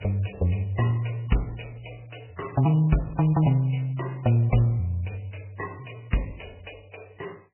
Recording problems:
codec artefacts; MP3, log-spectral distance 7 dB, nothing above 2.9 kHz

